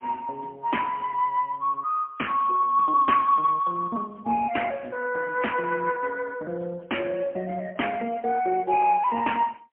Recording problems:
telephone audio; 220 Hz to 3.2 kHz, AMR-NB, then MP3

